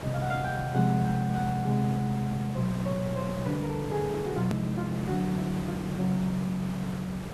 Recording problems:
background hiss; slope -6 dB per octave, SNR 9 dB
click at an edit; at 4.5 s

